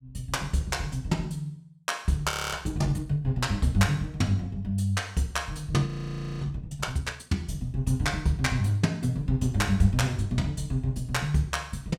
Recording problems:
audio freezing; at 2.5 s and at 6 s for 0.5 s

